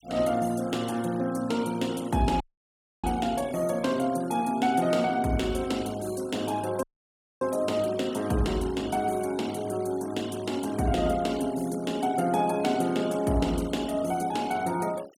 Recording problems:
noise reduction artefacts; signal-to-artefact ratio 19 dB
audio cutting out; at 2.5 s for 0.5 s and at 7 s for 0.5 s

